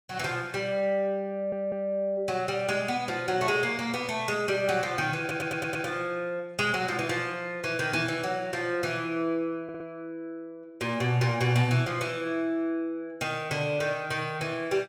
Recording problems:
audio stuttering; at 1.5 s, at 5 s and at 9.5 s

